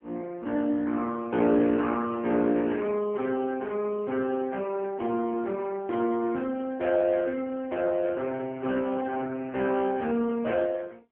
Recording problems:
telephone audio; 190 Hz to 3.2 kHz, AMR-NB

